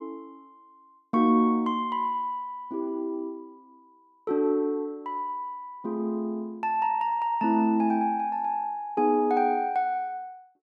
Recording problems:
none

